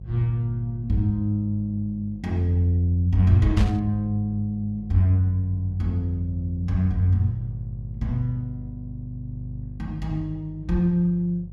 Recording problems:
hum; 50 Hz, harmonics up to 400 Hz, SNR 14 dB
burst of static; at 3.5 s; peak -7 dB vs average level

